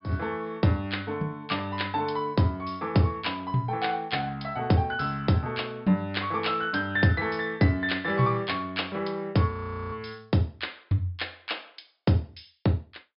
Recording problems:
treble cut off; nothing above 5.5 kHz
audio freezing; at 9.5 s

